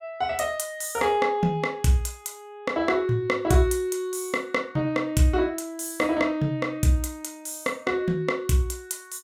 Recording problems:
none

